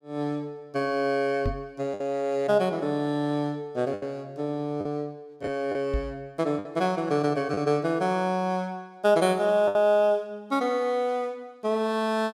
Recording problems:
packet loss; 3% of the sound replaced, filled with the last packet
microphone thump; at 1.5 s and at 6 s; peak +1 dB vs average level

